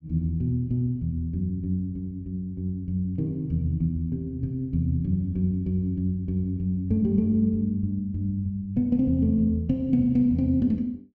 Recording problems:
none

